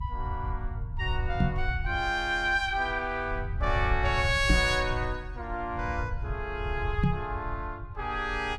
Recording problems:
rumble; below 96 Hz, SNR 6 dB
microphone bump; at 1.5 s, at 4.5 s and at 7 s; peak +8 dB vs average level

